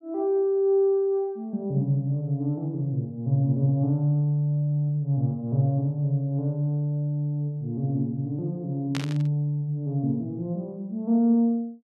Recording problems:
burst of static; at 9 s; peak -3 dB vs average level

